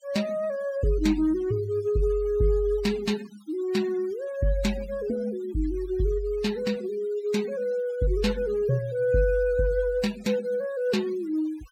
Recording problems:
noise reduction artefacts; signal-to-artefact ratio 19 dB

